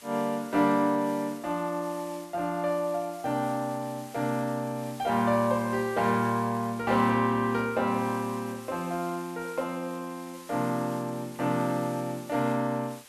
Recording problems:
hiss; slope +1 dB per octave, SNR 20 dB

